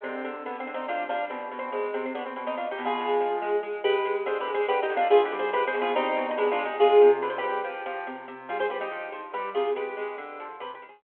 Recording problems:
telephone audio; 190 Hz to 3.4 kHz, G.726

